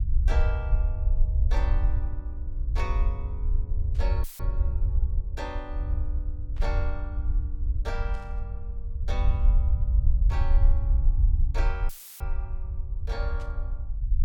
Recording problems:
low-frequency rumble; below 64 Hz, SNR -12 dB
burst of static; 5 times, first at 1.5 s; peak -9 dB vs average level
audio cutting out; at 4 s and at 12 s; filled with static

